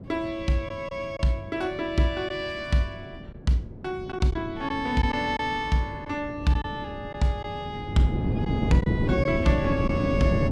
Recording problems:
wind on the microphone; below 280 Hz, SNR 3 dB
lost packets; 3% of the sound replaced, filled with silence

